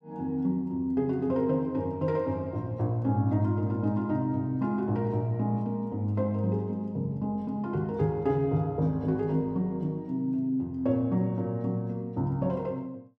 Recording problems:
none

